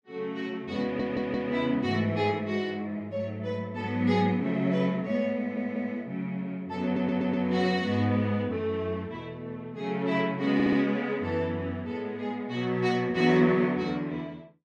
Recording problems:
stutter; 4 times, first at 1 s

